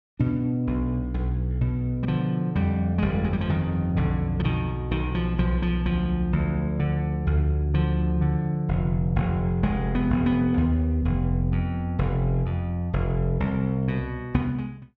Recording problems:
none

